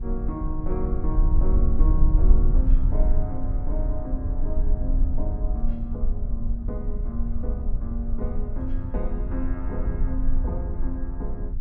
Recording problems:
low-frequency rumble; below 48 Hz, strongest tone 20 Hz, SNR -8 dB

